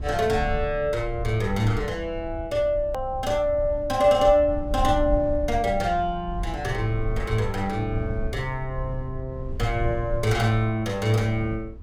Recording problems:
rumble; below 78 Hz, SNR 10 dB
edit click; at 3 s

